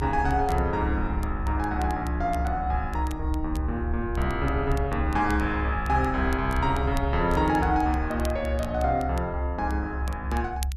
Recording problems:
rumble; below 70 Hz, strongest tone 68 Hz, SNR 4 dB
crackling; vinyl, SNR 22 dB

